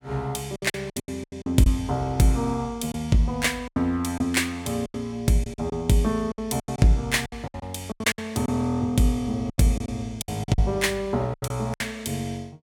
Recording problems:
lost packets; 12% of the sound replaced, filled with silence

